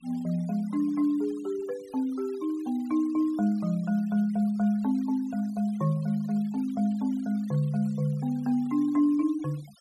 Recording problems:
denoising artefacts; signal-to-artefact ratio 26 dB

